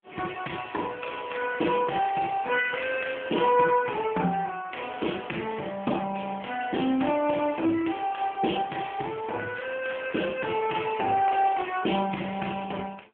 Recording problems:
phone line; 150 Hz to 3.3 kHz, AMR-NB

